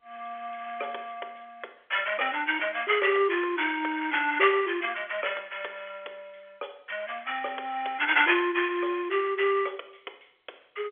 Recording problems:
telephone audio; 320 Hz to 3.5 kHz, G.711

